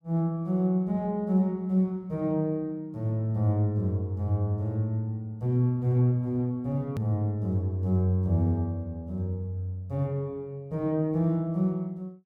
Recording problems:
edit click; at 7 s

